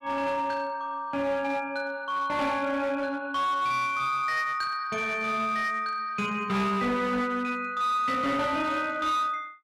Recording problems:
distortion; hard clipping, uneven, signal-to-distortion ratio 11 dB

